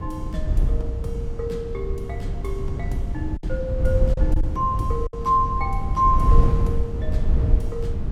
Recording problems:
rumble; below 72 Hz, SNR 0 dB
wind noise; below 150 Hz, SNR 5 dB
lost packets; 2% of the sound replaced, filled with silence

